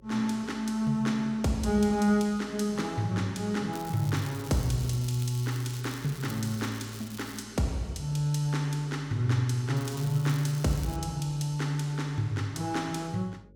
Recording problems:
mains hum; 50 Hz, harmonics up to 550 Hz, SNR 27 dB
crackle; from 3.5 to 7.5 s and from 10 to 11 s; loose cable, SNR 17 dB

